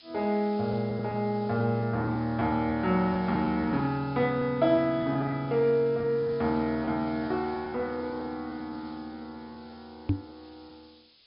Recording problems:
low-pass filter; nothing above 5.5 kHz
background hiss; SNR 27 dB
lost packets; 6% of the sound replaced, filled with repeated pitch periods
microphone bump; at 10 s; peak +5 dB vs average level

